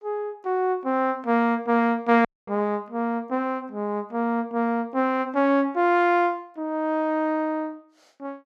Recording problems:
audio cutting out; at 2.5 s

